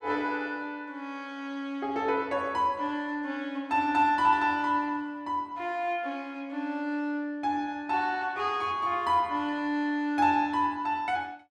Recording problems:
none

